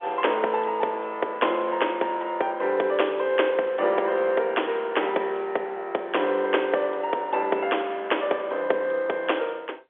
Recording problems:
telephone audio; 340 Hz to 3.4 kHz, G.711

